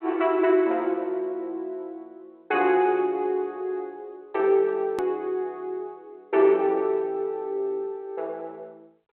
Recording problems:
phone line; 260 Hz to 3.3 kHz, G.726
edit click; at 5 s

